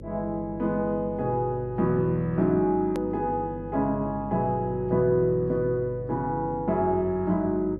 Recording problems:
hum; 50 Hz, harmonics up to 550 Hz, SNR 15 dB
edit click; at 3 s

